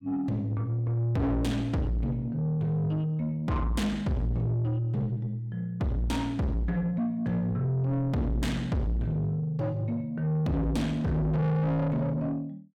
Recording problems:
distortion; soft clipping, signal-to-distortion ratio 8 dB

